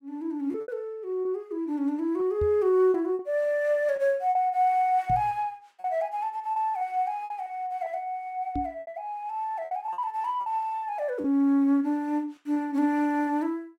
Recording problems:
packet loss; 7% of the sound replaced, filled with repeated pitch periods
microphone thump; at 2.5 s, at 5 s and at 8.5 s; peak -2 dB vs average level

